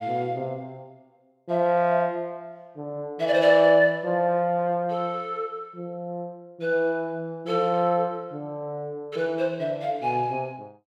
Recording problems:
none

